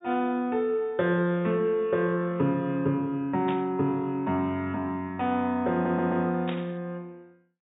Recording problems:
treble cut off; nothing above 4 kHz
static burst; at 3.5 s and at 6.5 s; peak -7 dB vs average level
stutter; at 5.5 s

